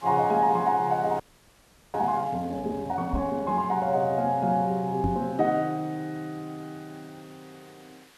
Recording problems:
background hiss; SNR 26 dB
audio freezing; at 1 s for 0.5 s
microphone thump; at 3 s and at 5 s; peak +3 dB vs average level

